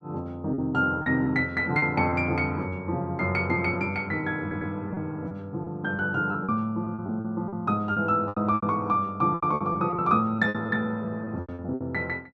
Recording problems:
lost packets; 10% of the sound replaced, filled with repeated pitch periods
stutter; at 4.5 s

